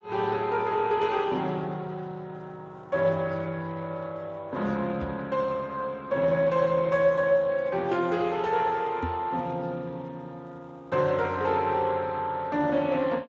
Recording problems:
lossy codec; Speex, log-spectral distance 3 dB
microphone thump; at 5 s and at 9 s; peak -2 dB vs average level

